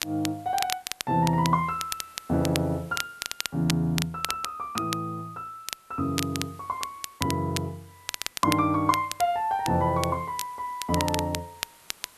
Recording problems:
background hiss; slope -1 dB per octave, SNR 26 dB
crackle; vinyl, SNR 7 dB

